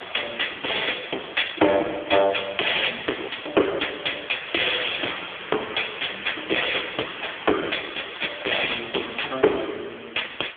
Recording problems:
phone line; 320 Hz to 3.3 kHz, AMR-NB
distorted audio; hard clipping, uneven, signal-to-distortion ratio 9 dB
hiss; SNR 13 dB

